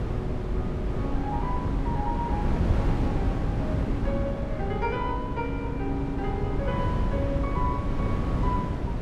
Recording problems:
hum; 50 Hz, harmonics up to 600 Hz, SNR 6 dB
wind on the microphone; below 220 Hz, SNR -4 dB

